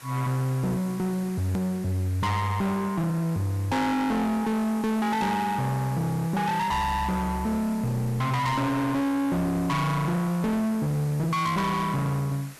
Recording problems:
distortion; soft clipping, signal-to-distortion ratio 7 dB
background hiss; SNR 19 dB
hard cut with a click; at 1.5 s

